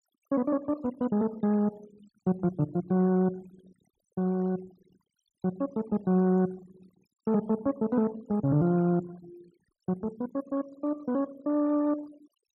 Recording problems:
noise reduction artefacts; signal-to-artefact ratio 25 dB

